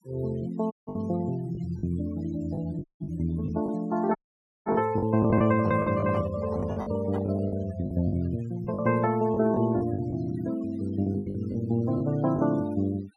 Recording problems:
denoising artefacts; signal-to-artefact ratio 19 dB
packet loss; 10% of the sound replaced, filled with the last packet
audio cutting out; at 0.5 s, at 3 s and at 4 s for 0.5 s
handling noise; from 5.5 to 7.5 s; peak -6 dB vs average level

